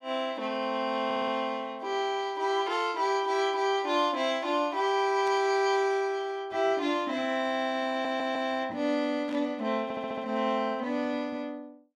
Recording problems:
audio stuttering; at 1 s, at 8 s and at 10 s
static burst; at 5.5 s and at 9.5 s; peak -12 dB vs average level

